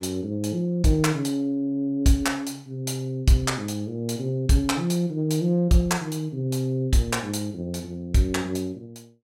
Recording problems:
none

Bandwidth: 16.5 kHz